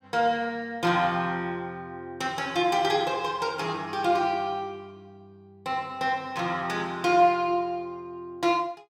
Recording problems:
none

